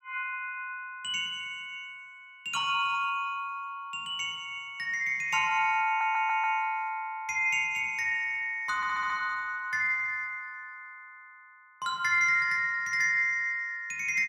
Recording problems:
stutter; at 6 s and at 9 s

